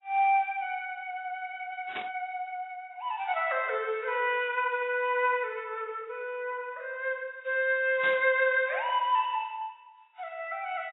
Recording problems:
codec artefacts; AAC, log-spectral distance 2 dB, nothing above 3.7 kHz
static burst; at 2 s and at 8 s; peak -6 dB vs average level

